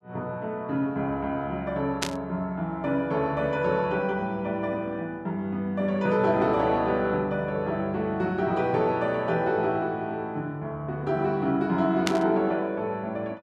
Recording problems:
burst of static; at 2 s and at 12 s; peak +4 dB vs average level

